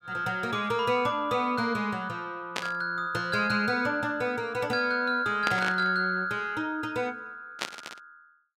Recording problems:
burst of static; at 2.5 s, at 5.5 s and at 7.5 s; peak +2 dB vs average level

